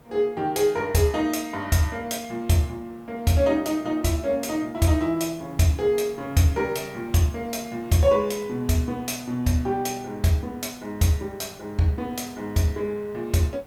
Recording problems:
background hiss; slope -7 dB per octave, SNR 25 dB

